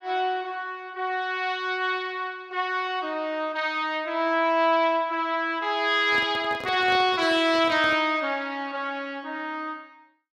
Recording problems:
handling noise; from 6 to 8 s; peak -10 dB vs average level

